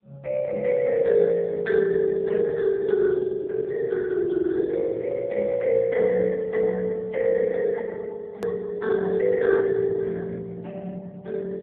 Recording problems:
telephone audio; 190 Hz to 3.5 kHz, AMR-NB
edit click; at 8.5 s

